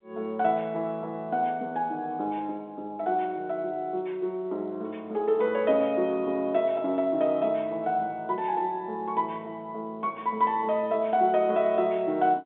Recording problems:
phone line; 240 Hz to 3.8 kHz, G.711

